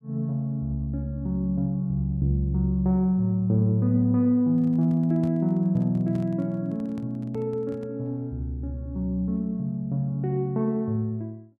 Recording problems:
microphone handling noise; from 4.5 to 8 s; peak -8 dB vs average level

